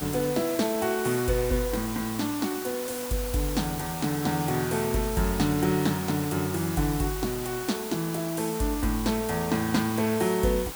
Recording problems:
hiss; SNR 8 dB

